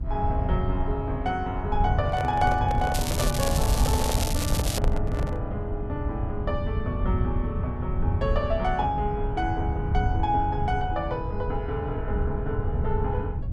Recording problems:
rumble; below 110 Hz, SNR 0 dB
microphone handling noise; from 2 to 5.5 s; peak +2 dB vs average level
crackle; from 3 to 5 s; loose cable, SNR 3 dB

